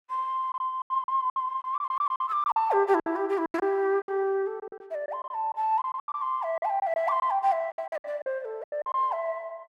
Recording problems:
lost packets; 14% of the sound replaced, filled with silence

